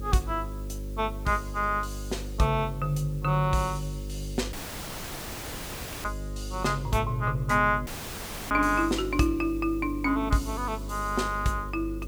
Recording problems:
hum; 50 Hz, harmonics up to 550 Hz, SNR 9 dB
background hiss; SNR 26 dB
audio cutting out; at 4.5 s for 1.5 s and at 8 s for 0.5 s

